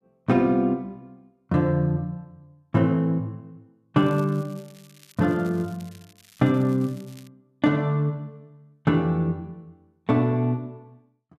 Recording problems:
crackling; from 4 to 7.5 s; loose cable, SNR 28 dB

